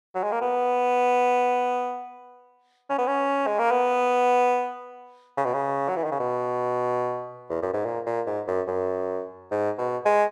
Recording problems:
none

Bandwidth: 12.5 kHz